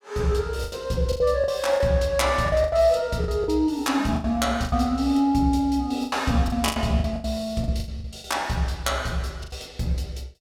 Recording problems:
lost packets; 12% of the sound replaced, filled with the last packet

